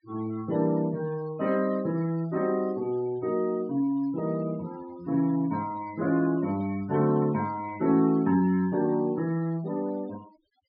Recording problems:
treble missing; nothing above 5.1 kHz
denoising artefacts; signal-to-artefact ratio 20 dB

